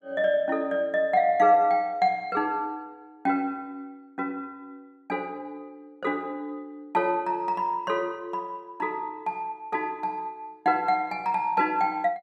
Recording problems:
none

